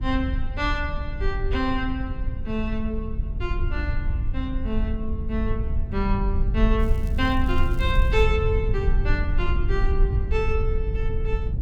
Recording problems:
rumble; below 70 Hz, SNR -2 dB
crackling; from 7 to 8 s; loose cable, SNR 24 dB

